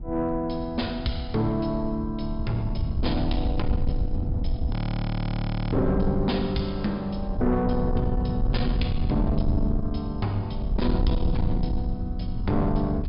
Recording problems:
treble cut off; nothing above 5.5 kHz
distorted audio; soft clipping, signal-to-distortion ratio 11 dB
low-frequency rumble; below 110 Hz, SNR 2 dB
audio freezing; at 4.5 s for 1 s

